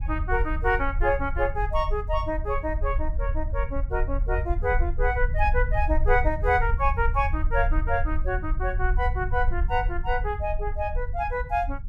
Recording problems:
rumble; below 60 Hz, SNR 2 dB

